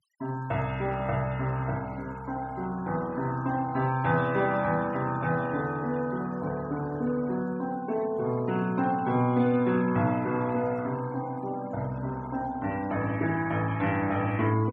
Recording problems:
denoising artefacts; signal-to-artefact ratio 20 dB

